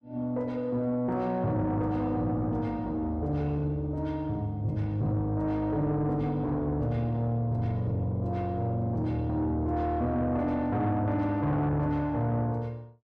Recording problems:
distorted audio; soft clipping, signal-to-distortion ratio 12 dB

